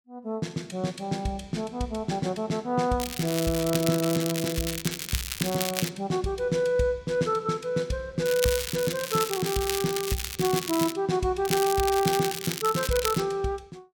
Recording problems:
crackle; from 3 to 6 s, from 8.5 to 11 s and from 11 to 13 s; loose cable, SNR 5 dB

